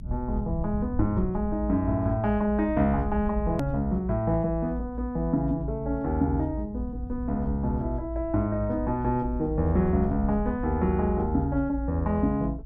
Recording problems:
low-frequency rumble; below 68 Hz, strongest tone 58 Hz, SNR 8 dB
edit click; at 3.5 s

